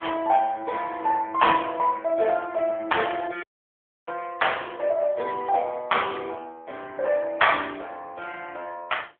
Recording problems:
telephone audio; 340 Hz to 3.4 kHz, AMR-NB
audio cutting out; at 3.5 s for 0.5 s

